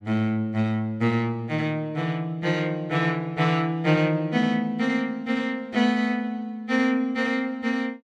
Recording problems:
none

